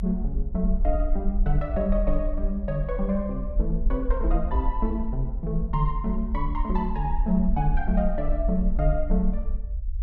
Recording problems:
rumble; below 48 Hz, SNR 1 dB

